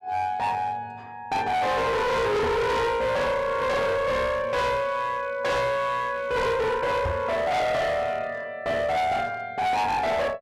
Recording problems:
distortion; hard clipping, uneven, signal-to-distortion ratio 6 dB
microphone bump; at 2.5 s and at 7 s; peak 0 dB vs average level

